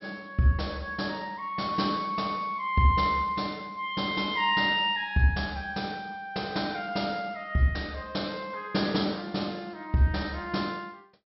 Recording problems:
treble cut off; nothing above 5.6 kHz

